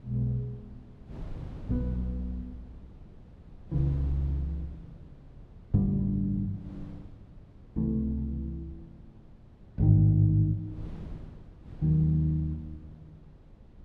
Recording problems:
wind noise; below 180 Hz, SNR 19 dB

